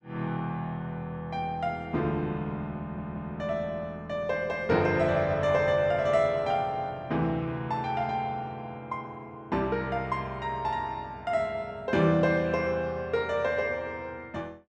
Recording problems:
audio stuttering; at 3 s

